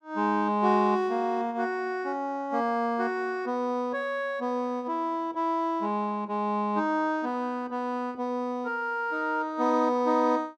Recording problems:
none

